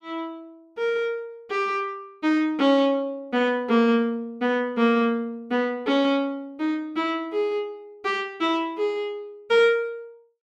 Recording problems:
none

